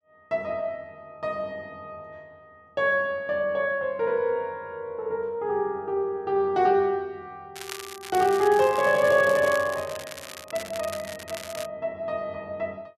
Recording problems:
crackle; from 7.5 to 12 s; loose cable, SNR 14 dB

